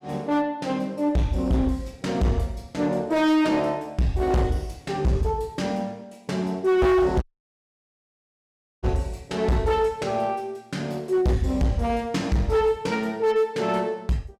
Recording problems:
distorted audio; hard clipping, uneven, signal-to-distortion ratio 7 dB
audio cutting out; at 7 s for 1.5 s

